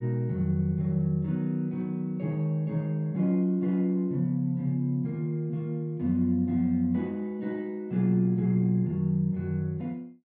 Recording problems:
none

